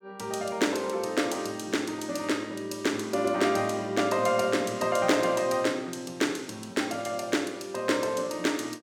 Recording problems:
none

